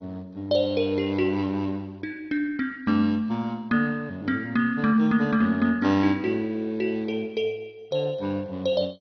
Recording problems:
lossy compression; MP2, log-spectral distance 2 dB, nothing above 6 kHz

